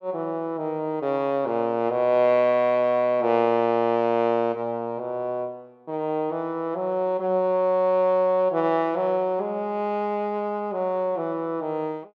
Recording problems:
none

